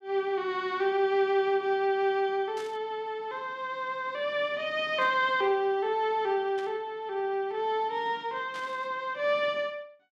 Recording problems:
burst of static; 4 times, first at 2.5 s; peak -12 dB vs average level

